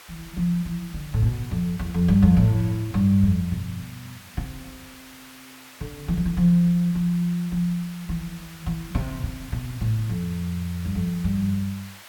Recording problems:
background hiss; SNR 20 dB

